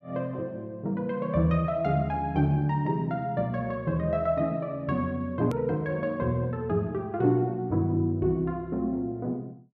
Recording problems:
click at an edit; at 5.5 s

